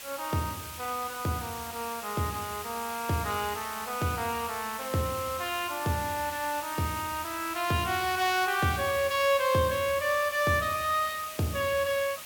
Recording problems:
background hiss; SNR 10 dB

